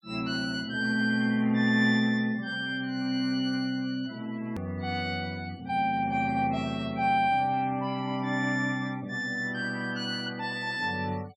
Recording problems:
denoising artefacts; signal-to-artefact ratio 23 dB
hard cut with a click; at 4.5 s

